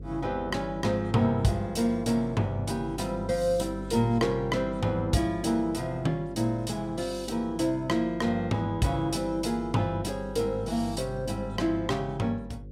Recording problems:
electrical hum; 50 Hz, harmonics up to 550 Hz, SNR 15 dB

